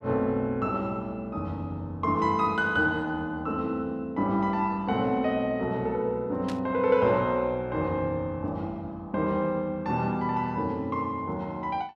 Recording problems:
burst of static; at 6.5 s; peak -9 dB vs average level

